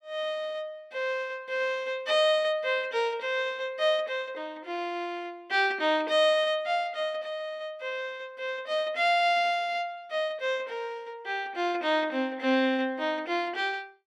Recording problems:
none

